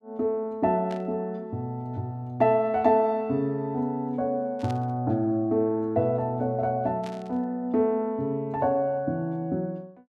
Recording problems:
burst of static; at 1 s, at 4.5 s and at 7 s; peak -13 dB vs average level

